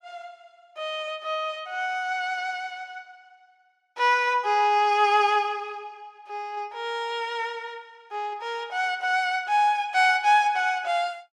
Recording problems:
none

